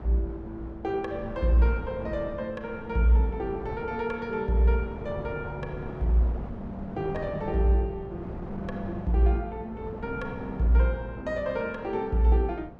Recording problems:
wind on the microphone; below 440 Hz, SNR 12 dB

